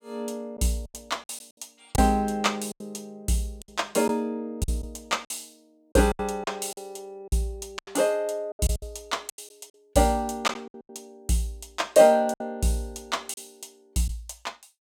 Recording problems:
packet loss; 9% of the sound replaced, filled with silence

